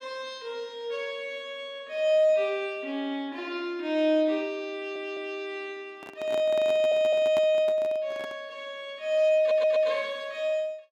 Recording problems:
stutter; at 5 s, at 6.5 s and at 9.5 s
handling noise; from 6 to 8.5 s; peak -6 dB vs average level

